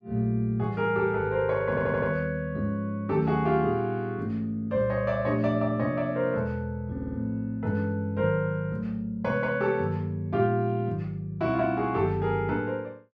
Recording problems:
stutter; at 1.5 s and at 7 s

